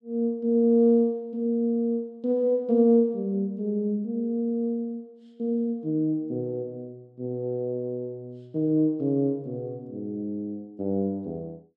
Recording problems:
none

